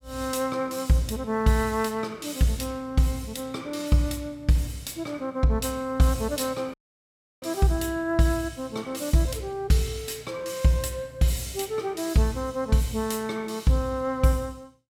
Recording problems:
audio cutting out; at 6.5 s for 0.5 s

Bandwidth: 17 kHz